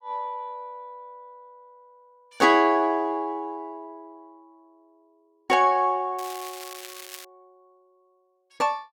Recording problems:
crackle; from 6 to 7.5 s; loose cable, SNR 16 dB

